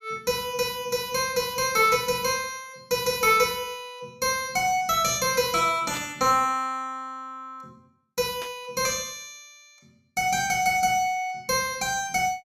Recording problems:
burst of static; at 2 s, at 6 s and at 8.5 s; peak -8 dB vs average level

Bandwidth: 14 kHz